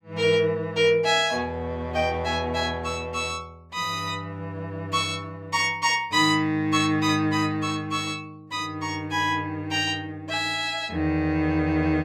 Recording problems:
none

